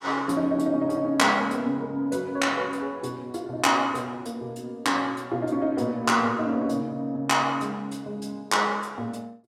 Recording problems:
none

